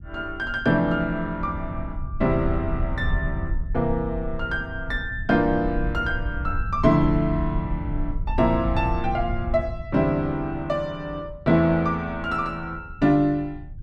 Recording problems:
rumble; below 84 Hz, SNR 8 dB

